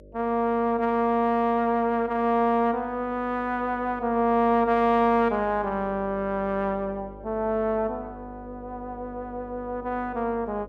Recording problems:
hum; 50 Hz, harmonics up to 600 Hz, SNR 21 dB

